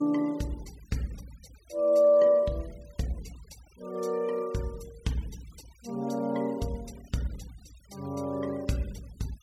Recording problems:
noise reduction artefacts; signal-to-artefact ratio 24 dB

